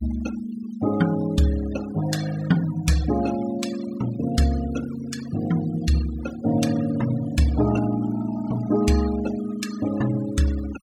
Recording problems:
denoising artefacts; signal-to-artefact ratio 15 dB

